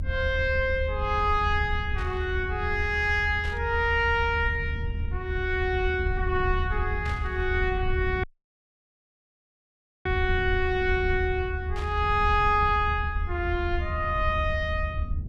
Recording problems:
rumble; below 80 Hz, SNR 5 dB
static burst; 4 times, first at 2 s; peak -11 dB vs average level
audio cutting out; at 8 s for 2 s

